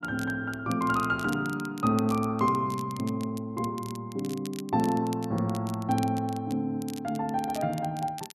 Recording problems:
crackle; vinyl, SNR 18 dB

